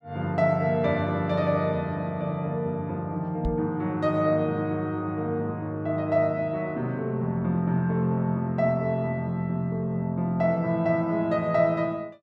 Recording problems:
microphone thump; at 3.5 s; peak -1 dB vs average level

